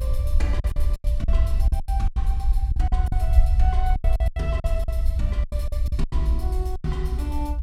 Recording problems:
rumble; below 66 Hz, SNR -10 dB
packet loss; 15% of the sound replaced, filled with silence

